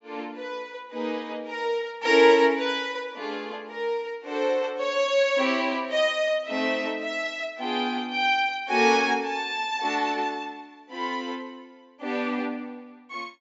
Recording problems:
low-pass filter; nothing above 8 kHz

